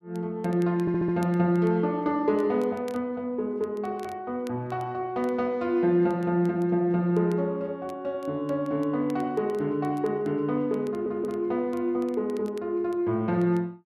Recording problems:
crackling; vinyl, SNR 29 dB
audio stuttering; at 1 s and at 11 s

